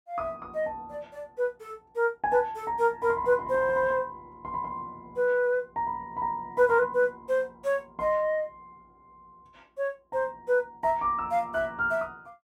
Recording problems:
none

